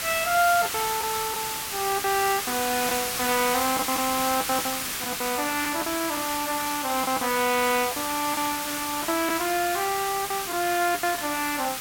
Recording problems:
background hiss; SNR 2 dB
packet loss; 9% of the sound replaced, filled with the last packet

